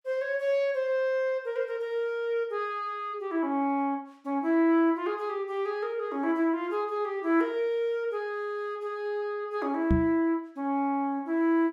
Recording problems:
microphone thump; at 10 s; peak +7 dB vs average level

